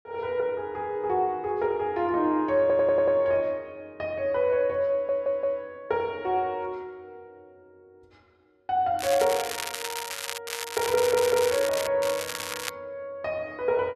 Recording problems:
audio stuttering; at 2.5 s, at 5 s and at 11 s
crackle; from 9 to 10 s, from 10 to 12 s and at 12 s; loose cable, SNR 7 dB

